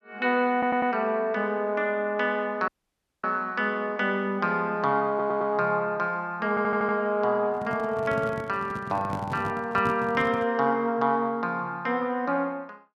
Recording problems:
stutter; at 0.5 s, at 5 s and at 6.5 s
audio cutting out; at 2.5 s for 0.5 s
handling noise; from 7.5 to 10 s; peak -3 dB vs average level

